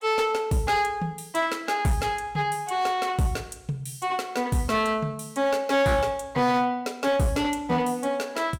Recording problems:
distortion; hard clipping, signal-to-distortion ratio 11 dB

